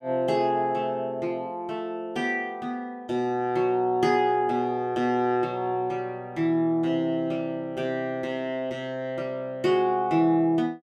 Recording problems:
none

